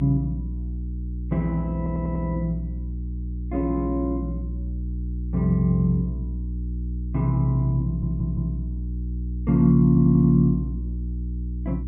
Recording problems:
low-pass filter; nothing above 4 kHz
mains hum; 60 Hz, harmonics up to 360 Hz, SNR 7 dB
audio stuttering; at 2 s, at 8 s and at 10 s

